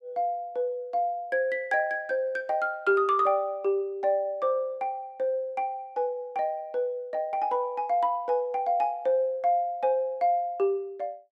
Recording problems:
none

